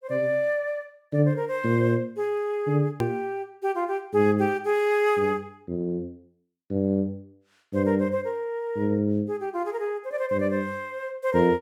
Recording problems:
edit click; at 3 s

